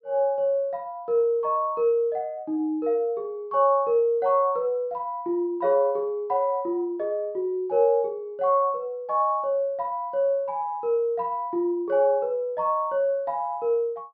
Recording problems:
low-pass filter; nothing above 5.5 kHz

